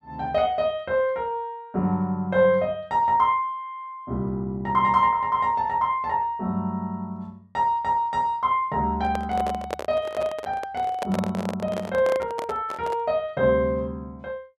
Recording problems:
handling noise; from 9 to 13 s; peak -1 dB vs average level

